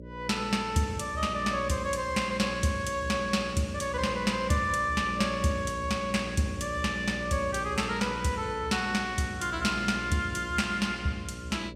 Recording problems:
hum; 60 Hz, harmonics up to 600 Hz, SNR 12 dB

